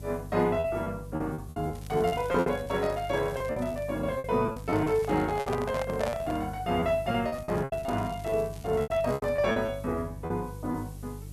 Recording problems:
hum; 50 Hz, harmonics up to 450 Hz, SNR 13 dB
background hiss; SNR 25 dB
lost packets; 13% of the sound replaced, filled with repeated pitch periods
crackling; from 1.5 to 4 s, at 4.5 s and from 7.5 to 9.5 s; loose cable, SNR 24 dB
handling noise; from 5 to 6.5 s; peak 0 dB vs average level

